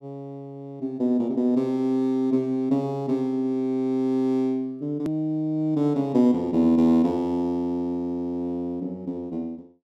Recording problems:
edit click; at 5 s

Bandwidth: 13 kHz